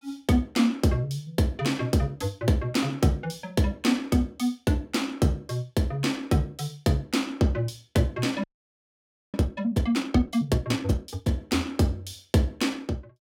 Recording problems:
audio freezing; at 8.5 s for 1 s

